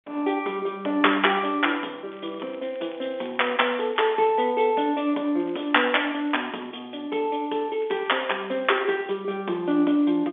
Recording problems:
phone line; 260 Hz to 3.5 kHz, G.711
crackling; from 2 to 4.5 s, from 5.5 to 6.5 s and from 8 to 9 s; loose cable, SNR 26 dB

